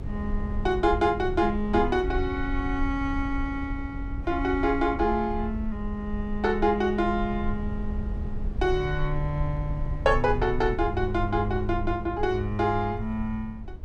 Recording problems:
low-frequency rumble; below 74 Hz, SNR 7 dB

